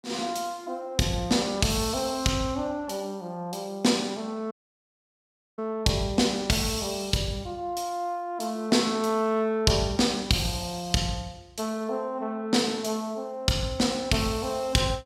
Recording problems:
dropout; at 4.5 s for 1 s

